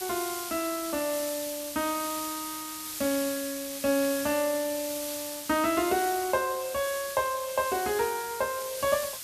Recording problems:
background hiss; slope +2 dB per octave, SNR 6 dB

